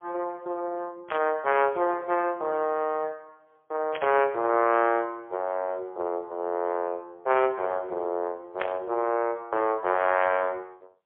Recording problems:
telephone audio; 320 Hz to 3.2 kHz, AMR-NB, then MP3
burst of static; at 1 s, at 4 s and at 8.5 s; peak -1 dB vs average level

